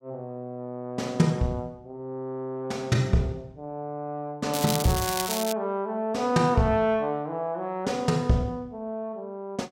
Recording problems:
crackle; at 4.5 s; loose cable, SNR 3 dB

